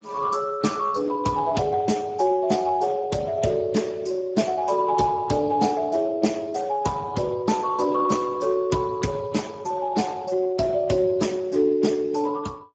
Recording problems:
lossy codec; Speex, then Speex, log-spectral distance 4 dB, nothing above 7.3 kHz

